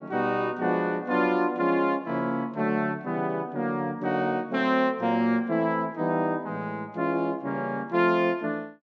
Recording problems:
none

